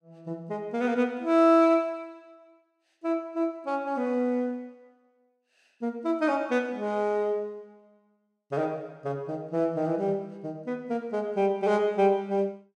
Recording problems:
none

